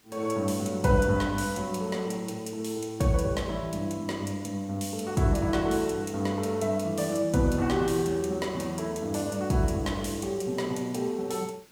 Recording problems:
hiss; SNR 29 dB

